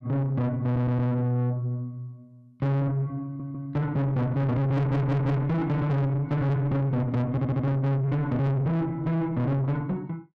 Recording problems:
distorted audio; soft clipping, signal-to-distortion ratio 6 dB
stutter; 4 times, first at 0.5 s

